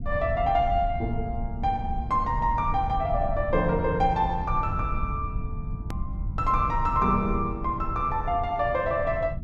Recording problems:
low-frequency rumble; below 100 Hz, SNR 7 dB
hard cut with a click; at 6 s

